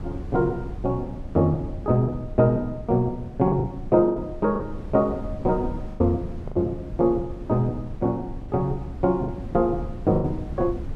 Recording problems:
wind on the microphone; below 150 Hz, SNR 12 dB
packet loss; 5% of the sound replaced, filled with the last packet

